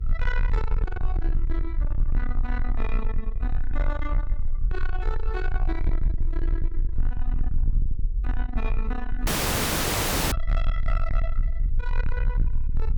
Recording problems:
distortion; soft clipping, signal-to-distortion ratio 8 dB
electrical hum; 50 Hz, harmonics up to 500 Hz, SNR 16 dB
rumble; below 44 Hz, strongest tone 18 Hz, SNR -7 dB
dropout; at 9.5 s for 1 s

